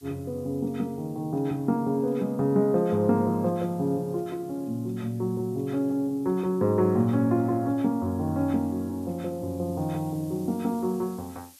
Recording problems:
hiss; slope +4 dB per octave, SNR 27 dB

